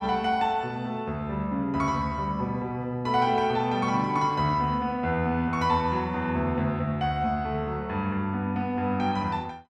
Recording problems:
none

